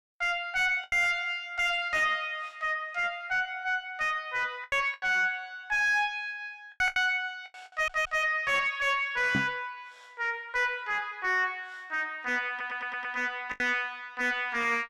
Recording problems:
distorted audio; soft clipping, signal-to-distortion ratio 5 dB
packet loss; 4% of the sound replaced, filled with the last packet
audio stuttering; at 7.5 s and at 12 s
microphone bump; at 9.5 s; peak +3 dB vs average level

